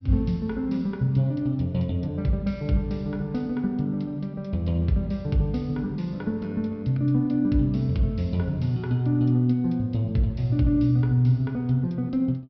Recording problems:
low-pass filter; nothing above 5.5 kHz

